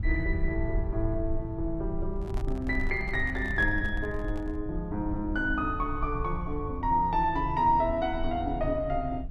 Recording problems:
low-frequency rumble; below 68 Hz, SNR 7 dB
handling noise; from 2 to 4.5 s; peak -9 dB vs average level

